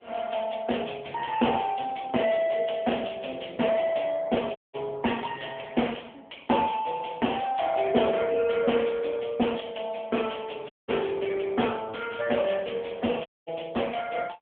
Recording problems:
telephone audio; 260 Hz to 3.4 kHz, AMR-NB
dropout; at 4.5 s, at 11 s and at 13 s

